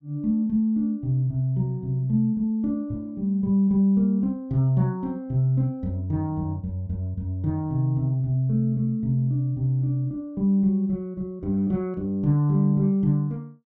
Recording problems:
none

